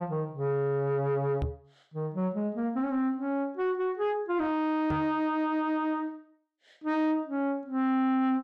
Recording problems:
distortion; soft clipping, signal-to-distortion ratio 11 dB
knock on the microphone; at 1.5 s and at 5 s; peak 0 dB vs average level

